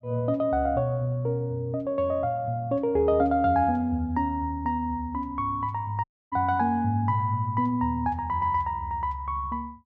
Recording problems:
dropout; at 6 s

